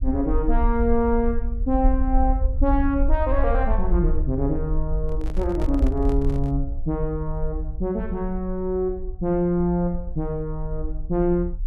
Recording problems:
low-frequency rumble; below 56 Hz, SNR 3 dB
handling noise; from 5 to 6.5 s; peak -7 dB vs average level

